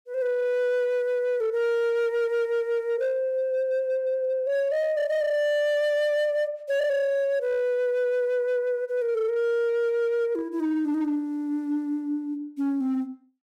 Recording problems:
distorted audio; hard clipping, signal-to-distortion ratio 12 dB

